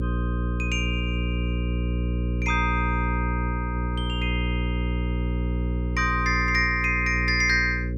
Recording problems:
hum; 60 Hz, harmonics up to 540 Hz, SNR 2 dB

